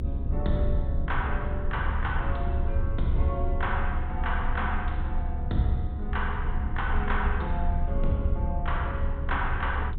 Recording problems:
treble missing; nothing above 4 kHz
low-frequency rumble; below 70 Hz, strongest tone 24 Hz, SNR -2 dB

